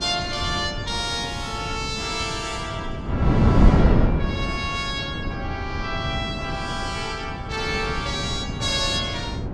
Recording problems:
wind on the microphone; below 260 Hz, SNR -1 dB

